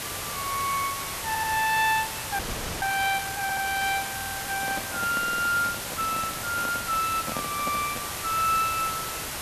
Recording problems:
background hiss; slope -2 dB per octave, SNR 4 dB
audio stuttering; 4 times, first at 1.5 s
frozen audio; at 2.5 s
handling noise; from 4.5 to 8 s; peak -4 dB vs average level

